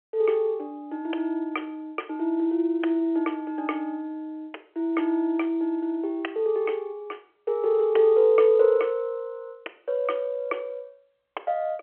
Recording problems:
phone line; 280 Hz to 3.3 kHz, G.711

